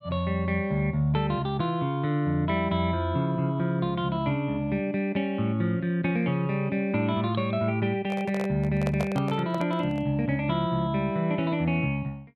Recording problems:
microphone handling noise; from 8 to 10 s; peak -2 dB vs average level

